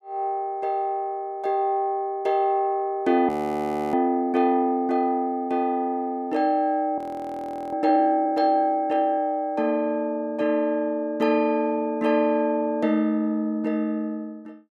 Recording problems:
audio freezing; at 3.5 s for 0.5 s and at 7 s for 0.5 s

